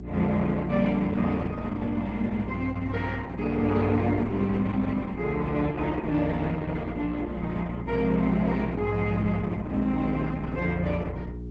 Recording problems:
codec artefacts; Opus, log-spectral distance 3 dB, nothing above 7.6 kHz
mains hum; 60 Hz, harmonics up to 420 Hz, SNR 11 dB

